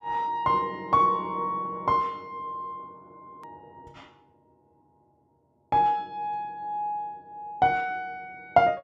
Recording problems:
click at an edit; at 3.5 s

